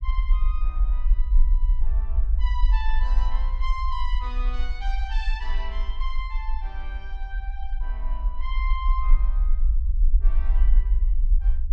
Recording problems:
low-frequency rumble; below 46 Hz, SNR -11 dB

